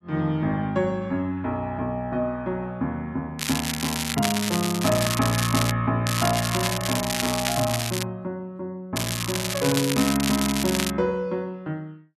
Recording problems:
crackle; from 3.5 to 5.5 s, from 6 to 8 s and from 9 to 11 s; loose cable, SNR 2 dB

